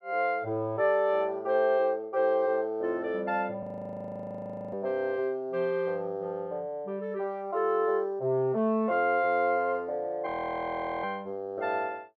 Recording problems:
frozen audio; at 3.5 s for 1 s and at 10 s for 1 s

